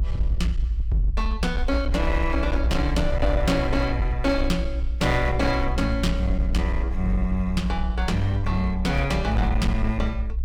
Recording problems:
distorted audio; hard clipping, signal-to-distortion ratio 12 dB
low-frequency rumble; below 60 Hz, strongest tone 56 Hz, SNR 3 dB

